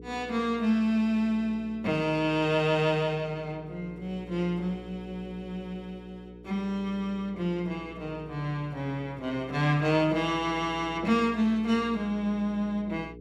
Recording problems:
hum; 60 Hz, harmonics up to 480 Hz, SNR 17 dB

